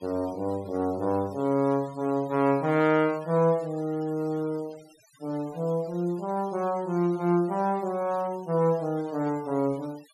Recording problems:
denoising artefacts; signal-to-artefact ratio 24 dB

